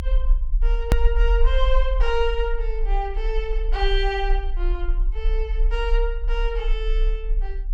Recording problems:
rumble; below 42 Hz, strongest tone 32 Hz, SNR -3 dB
hard cut with a click; at 1 s

